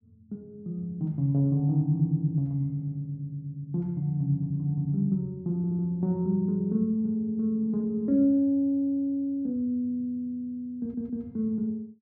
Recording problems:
audio stuttering; at 5.5 s and at 11 s

